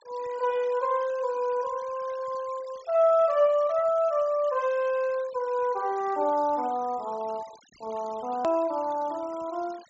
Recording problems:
treble cut off; nothing above 7.6 kHz
noise reduction artefacts; signal-to-artefact ratio 23 dB
hard cut with a click; at 8.5 s

